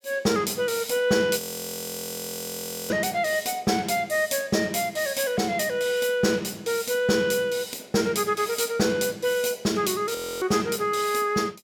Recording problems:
frozen audio; at 1.5 s for 1.5 s and at 10 s

